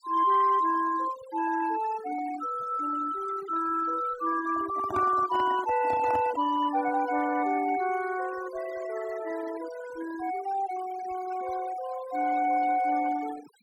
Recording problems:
denoising artefacts; signal-to-artefact ratio 16 dB
microphone handling noise; from 4.5 to 6.5 s; peak -3 dB vs average level

